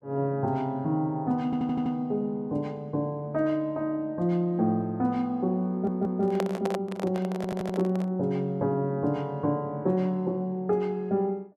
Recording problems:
audio stuttering; at 1.5 s, at 5.5 s and at 7.5 s
microphone handling noise; from 6 to 8 s; peak +1 dB vs average level

